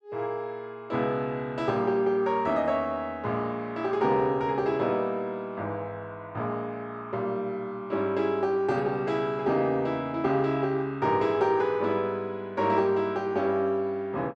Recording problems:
none

